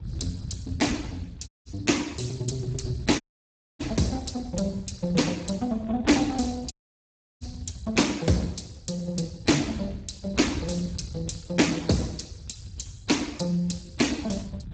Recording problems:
lossy codec; Speex, log-spectral distance 4 dB, nothing above 7.6 kHz
rumble; below 130 Hz, SNR 14 dB
audio cutting out; at 1.5 s, at 3 s for 0.5 s and at 6.5 s for 0.5 s

